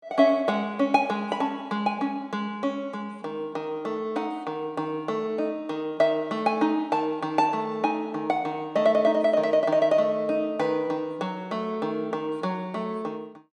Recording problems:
none

